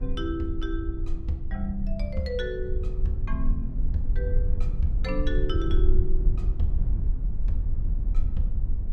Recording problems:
rumble; below 52 Hz, strongest tone 22 Hz, SNR -4 dB

